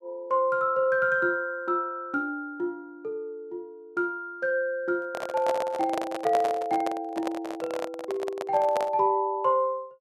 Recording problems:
microphone handling noise; from 5 to 9 s; peak +1 dB vs average level

